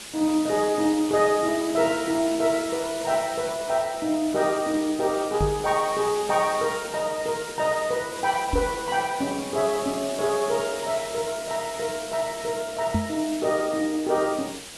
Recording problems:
lossy compression; AAC, log-spectral distance 8 dB
background hiss; SNR 12 dB
knock on the microphone; at 5.5 s, at 8.5 s and at 13 s; peak +4 dB vs average level

